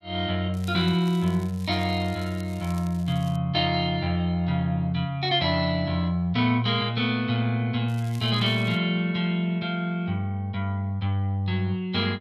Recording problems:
crackle; from 0.5 to 3.5 s and at 8 s; loose cable, SNR 24 dB

